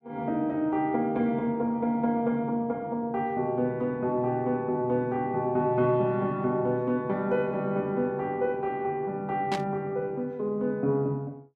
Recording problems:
static burst; at 9.5 s; peak -3 dB vs average level

